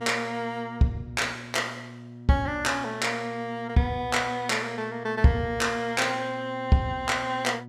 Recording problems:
electrical hum; 60 Hz, harmonics up to 960 Hz, SNR 16 dB

